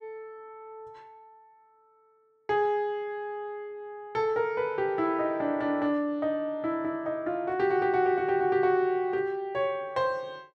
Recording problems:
none

